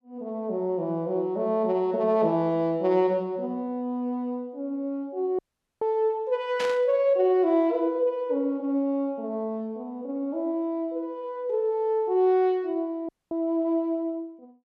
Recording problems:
audio cutting out; at 5.5 s and at 13 s
static burst; at 6.5 s; peak -3 dB vs average level

